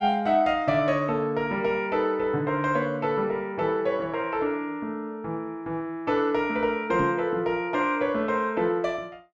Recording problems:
microphone thump; at 7 s; peak -1 dB vs average level

